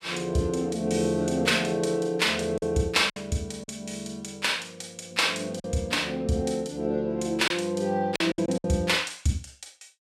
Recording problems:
lost packets; 4% of the sound replaced, filled with silence

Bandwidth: 15.5 kHz